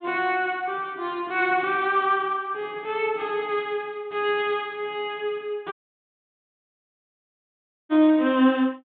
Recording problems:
treble cut off; nothing above 4 kHz
audio cutting out; at 5.5 s for 2 s

